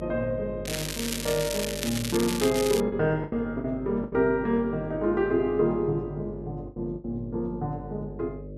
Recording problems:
hum; 50 Hz, harmonics up to 600 Hz, SNR 12 dB
lost packets; 5% of the sound replaced, filled with the last packet
crackling; from 0.5 to 3 s; loose cable, SNR 5 dB

